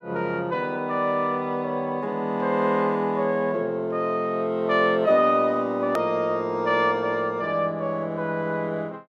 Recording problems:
edit click; at 6 s

